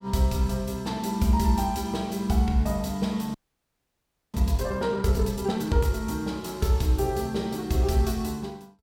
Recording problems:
audio freezing; at 3.5 s for 1 s

